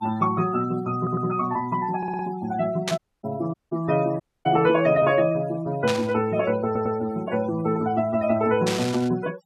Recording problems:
denoising artefacts; signal-to-artefact ratio 19 dB
audio stuttering; at 1 s, at 2 s and at 6.5 s
burst of static; at 3 s, at 6 s and at 8.5 s; peak +1 dB vs average level
dropout; at 3 s, at 3.5 s and at 4 s

